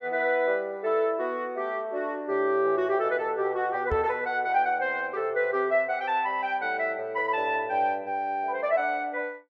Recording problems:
knock on the microphone; at 4 s; peak -3 dB vs average level

